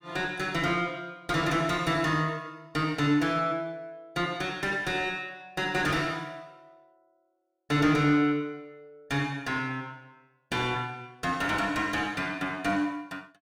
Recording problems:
distorted audio; soft clipping, signal-to-distortion ratio 11 dB

